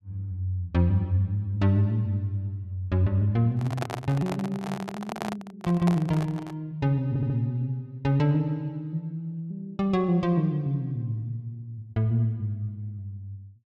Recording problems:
microphone handling noise; from 3.5 to 6.5 s; peak 0 dB vs average level
stutter; at 7 s

